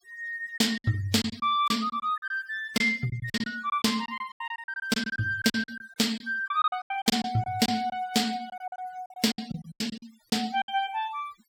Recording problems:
noise reduction artefacts; signal-to-artefact ratio 20 dB
lost packets; 15% of the sound replaced, filled with silence

